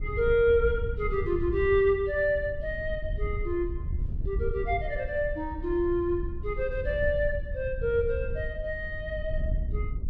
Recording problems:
wind noise; below 78 Hz, SNR 7 dB

